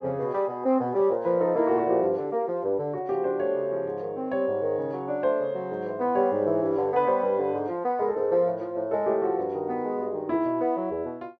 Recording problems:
none

